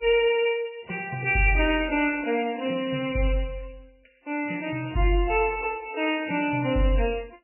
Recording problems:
codec artefacts; MP3, log-spectral distance 6 dB, nothing above 2.4 kHz

